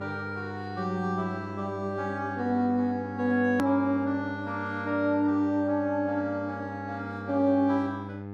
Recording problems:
hum; 50 Hz, harmonics up to 1.7 kHz, SNR 11 dB
edit click; at 3.5 s

